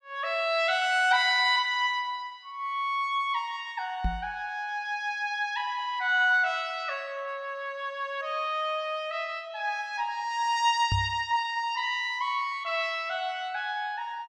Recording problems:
knock on the microphone; at 4 s and at 11 s; peak +2 dB vs average level

